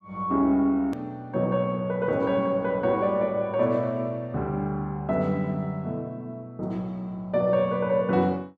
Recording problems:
click at an edit; at 1 s

